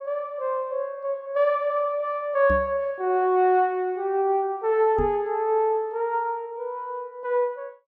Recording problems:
microphone thump; at 2.5 s and at 5 s; peak -2 dB vs average level

